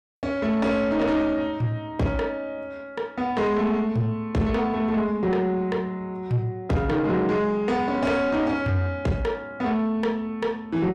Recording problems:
distorted audio; soft clipping, signal-to-distortion ratio 11 dB

